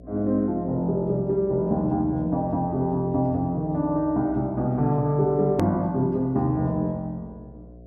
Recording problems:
electrical hum; 60 Hz, harmonics up to 720 Hz, SNR 21 dB
hard cut with a click; at 5.5 s

